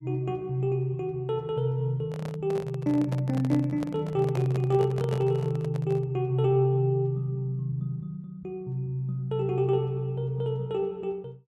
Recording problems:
handling noise; from 2 to 6 s; peak -4 dB vs average level

